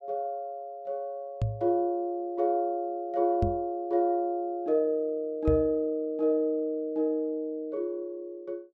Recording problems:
microphone thump; at 1.5 s, at 3.5 s and at 5.5 s; peak +4 dB vs average level

